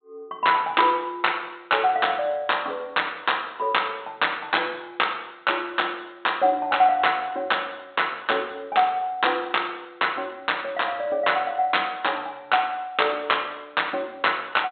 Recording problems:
treble cut off; nothing above 4 kHz

